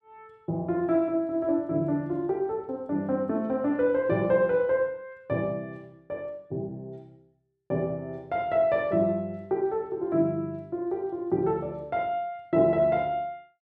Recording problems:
none

